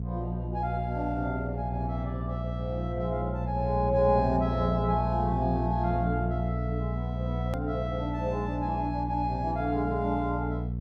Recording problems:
hum; 60 Hz, harmonics up to 480 Hz, SNR 2 dB
hard cut with a click; at 7.5 s

